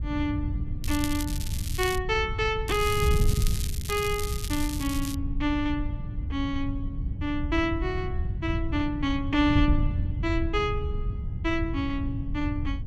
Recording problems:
wind on the microphone; below 100 Hz, SNR 2 dB
crackle; from 1 to 2 s and from 2.5 to 5 s; loose cable, SNR 8 dB

